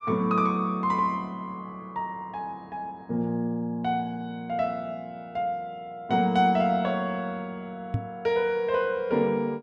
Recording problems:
knock on the microphone; at 8 s; peak +4 dB vs average level

